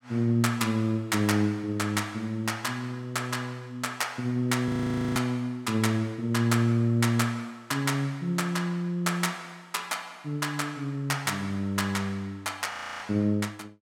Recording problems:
audio freezing; at 4.5 s and at 13 s

